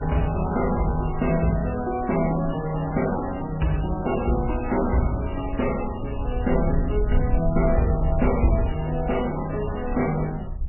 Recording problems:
codec artefacts; MP3, log-spectral distance 6 dB, nothing above 2.8 kHz
wind noise; below 68 Hz, SNR 7 dB

